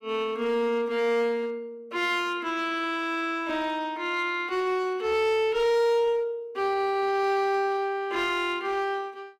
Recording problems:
distorted audio; hard clipping, uneven, signal-to-distortion ratio 10 dB

